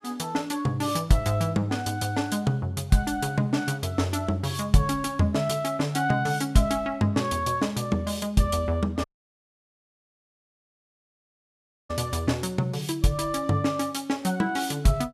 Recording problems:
dropout; at 9 s for 3 s

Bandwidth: 15 kHz